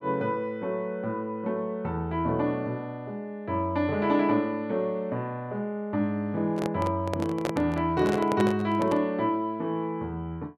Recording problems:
handling noise; from 6.5 to 9 s; peak +2 dB vs average level

